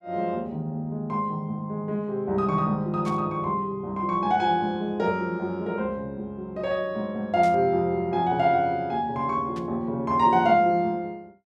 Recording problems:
burst of static; at 3 s, at 7.5 s and at 9.5 s; peak -13 dB vs average level

